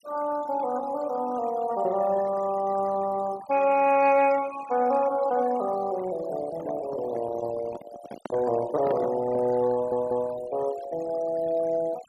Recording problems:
noise reduction artefacts; signal-to-artefact ratio 18 dB
microphone handling noise; from 6.5 to 9.5 s; peak -5 dB vs average level
audio stuttering; at 9.5 s

